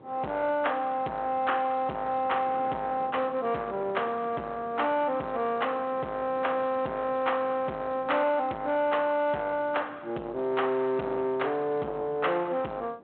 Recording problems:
phone line; 240 Hz to 3.4 kHz, G.726
distortion; soft clipping, signal-to-distortion ratio 11 dB
wind noise; below 820 Hz, SNR 21 dB

